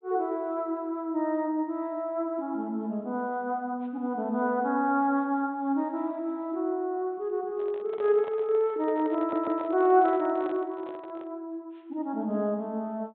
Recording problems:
treble cut off; nothing above 4 kHz
handling noise; from 7.5 to 11 s; peak -8 dB vs average level
audio stuttering; at 9 s

